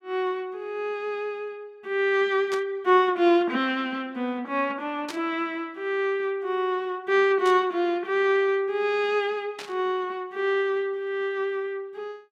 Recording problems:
static burst; 4 times, first at 2.5 s; peak -7 dB vs average level

